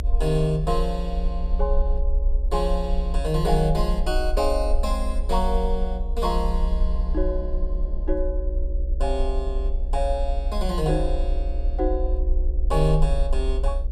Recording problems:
hum; 60 Hz, harmonics up to 600 Hz, SNR 18 dB
rumble; below 58 Hz, strongest tone 26 Hz, SNR 0 dB

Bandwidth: 13.5 kHz